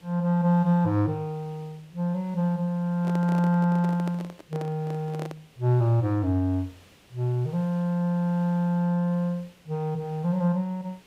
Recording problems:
background hiss; SNR 29 dB
handling noise; from 3 to 5.5 s; peak -8 dB vs average level

